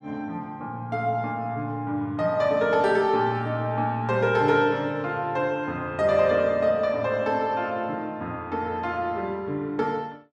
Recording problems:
none

